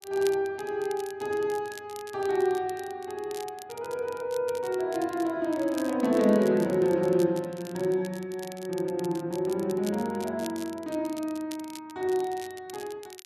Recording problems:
crackle; vinyl, SNR 18 dB

